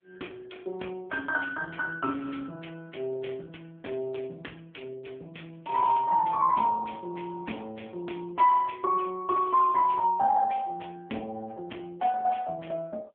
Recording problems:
phone line; 300 Hz to 2.8 kHz, AMR-NB

